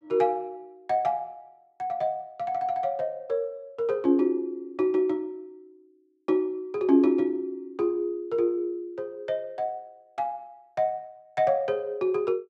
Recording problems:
none

